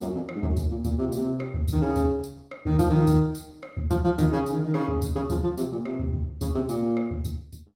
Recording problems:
codec artefacts; Opus, log-spectral distance 2 dB, nothing above 15.5 kHz

